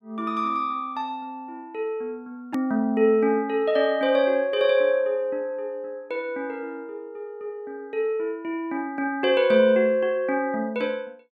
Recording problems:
click at an edit; at 2.5 s

